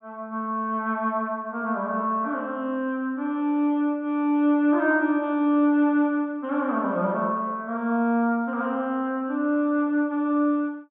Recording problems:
treble missing; nothing above 3.9 kHz

